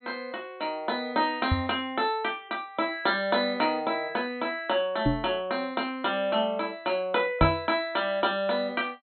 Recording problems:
treble cut off; nothing above 4.2 kHz
microphone thump; at 1.5 s, at 5 s and at 7.5 s; peak +6 dB vs average level

